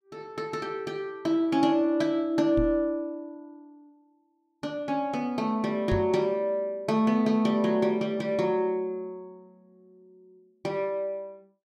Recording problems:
knock on the microphone; at 2.5 s and at 6 s; peak +1 dB vs average level

